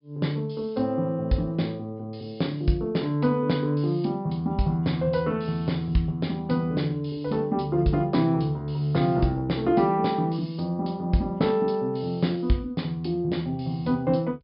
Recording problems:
low-pass filter; nothing above 5.5 kHz

